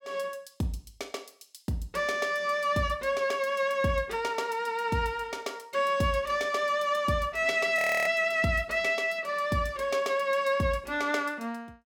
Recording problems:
frozen audio; at 8 s

